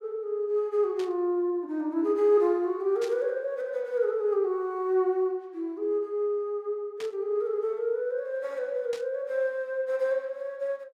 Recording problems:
burst of static; 4 times, first at 1 s; peak -9 dB vs average level

